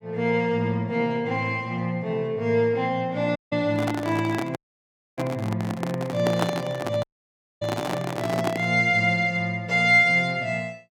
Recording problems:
audio cutting out; at 3.5 s, at 4.5 s for 0.5 s and at 7 s for 0.5 s
handling noise; from 3.5 to 8.5 s; peak +3 dB vs average level

